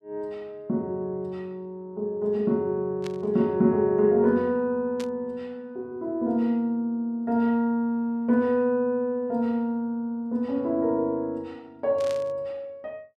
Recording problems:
burst of static; at 3 s, at 5 s and at 12 s; peak -9 dB vs average level

